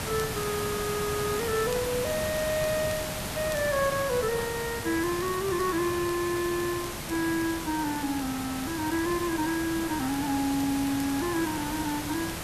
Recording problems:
hiss; slope -3 dB per octave, SNR 4 dB
crackle; vinyl, SNR 21 dB

